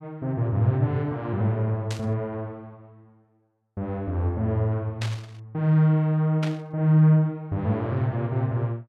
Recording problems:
static burst; at 2 s, at 5 s and at 6.5 s; peak -6 dB vs average level

